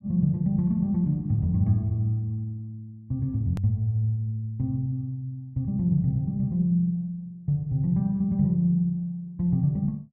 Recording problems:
hard cut with a click; at 3.5 s

